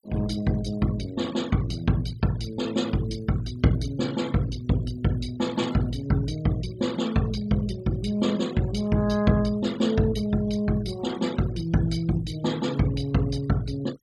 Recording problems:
denoising artefacts; signal-to-artefact ratio 18 dB

